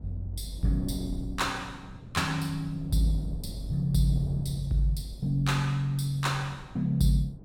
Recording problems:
wind noise; below 200 Hz, SNR 14 dB

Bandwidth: 16.5 kHz